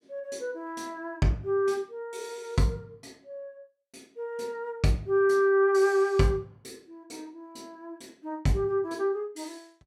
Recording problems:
none

